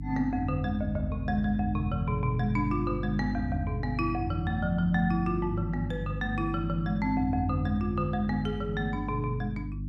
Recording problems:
electrical hum; 50 Hz, harmonics up to 300 Hz, SNR 6 dB

